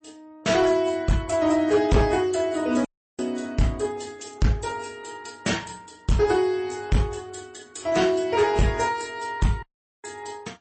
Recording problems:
codec artefacts; AAC, then MP3, log-spectral distance 5 dB, nothing above 8.2 kHz
distorted audio; hard clipping, signal-to-distortion ratio 11 dB
dropout; at 3 s and at 9.5 s

